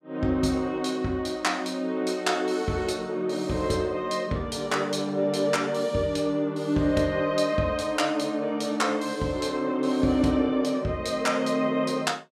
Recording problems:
none

